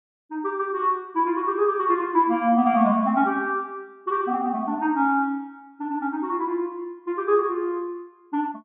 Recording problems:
low-pass filter; nothing above 4 kHz

